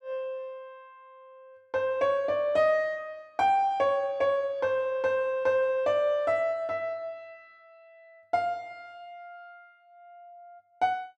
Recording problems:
none

